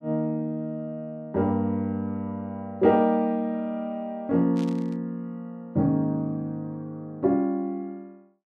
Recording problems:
burst of static; at 4.5 s; peak -14 dB vs average level

